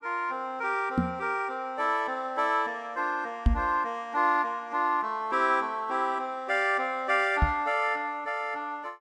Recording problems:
microphone bump; at 1 s, at 3.5 s and at 7.5 s; peak +8 dB vs average level

